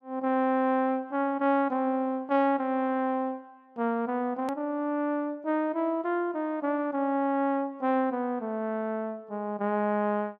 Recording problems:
hard cut with a click; at 4.5 s

